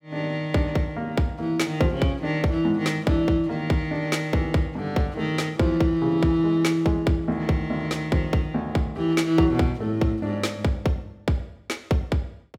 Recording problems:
none

